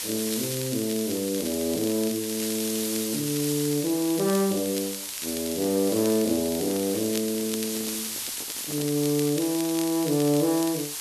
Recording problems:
hiss; slope +3 dB per octave, SNR 5 dB
crackling; vinyl, SNR 14 dB
handling noise; from 6.5 to 9 s; peak -10 dB vs average level

